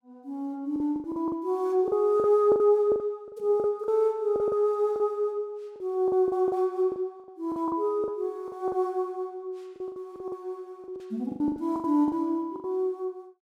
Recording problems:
packet loss; 14% of the sound replaced, filled with the last packet

